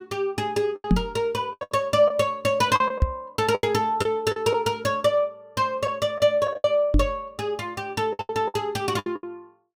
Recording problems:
lost packets; 11% of the sound replaced, filled with the last packet
knock on the microphone; at 1 s, at 3 s and at 7 s; peak +8 dB vs average level

